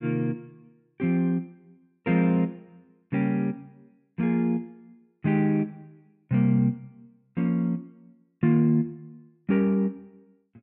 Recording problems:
none

